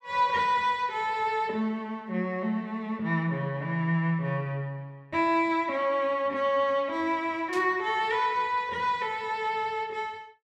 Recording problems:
static burst; at 7.5 s; peak -9 dB vs average level

